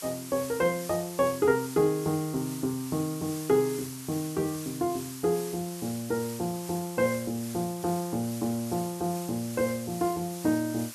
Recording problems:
background hiss; SNR 11 dB

